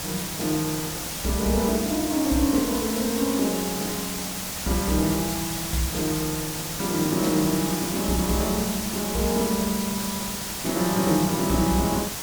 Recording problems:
hiss; slope -1 dB per octave, SNR 4 dB

